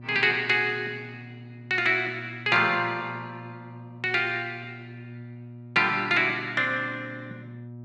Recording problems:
hum; 60 Hz, harmonics up to 720 Hz, SNR 18 dB

